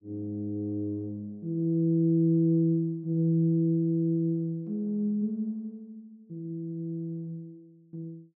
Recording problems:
none

